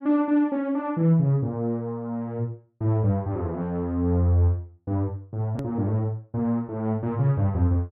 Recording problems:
click at an edit; at 5.5 s

